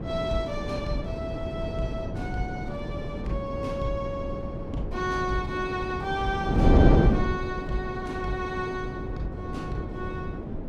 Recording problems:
wind noise; below 350 Hz, SNR -2 dB

